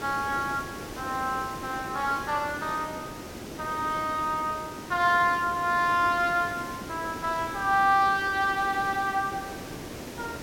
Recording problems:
background hiss; SNR 12 dB

